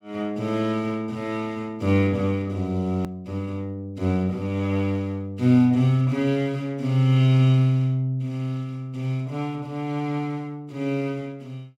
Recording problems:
hard cut with a click; at 3 s

